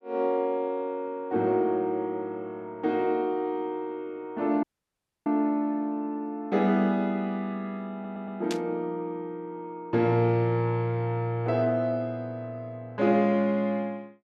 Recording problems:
dropout; at 4.5 s for 0.5 s
stutter; at 8 s
static burst; at 8.5 s; peak -3 dB vs average level

